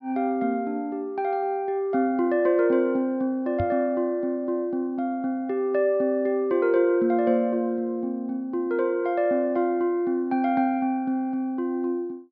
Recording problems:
treble missing; nothing above 5.4 kHz
microphone thump; at 3.5 s; peak -1 dB vs average level

